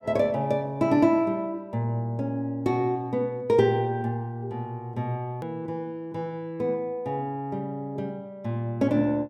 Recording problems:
click at an edit; at 5.5 s

